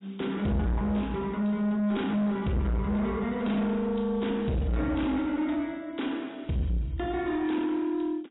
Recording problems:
codec artefacts; AAC, log-spectral distance 2 dB, nothing above 3.8 kHz
distortion; soft clipping, signal-to-distortion ratio 8 dB

